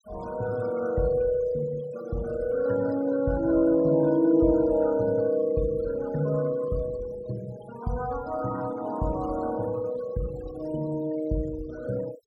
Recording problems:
noise reduction artefacts; signal-to-artefact ratio 19 dB

